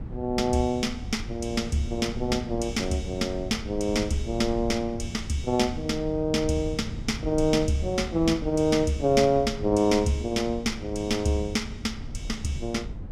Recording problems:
rumble; below 130 Hz, SNR 11 dB

